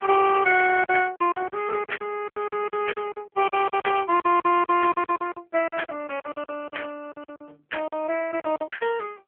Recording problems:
phone line; 280 Hz to 3.3 kHz, AMR-NB
lost packets; 16% of the sound replaced, filled with silence

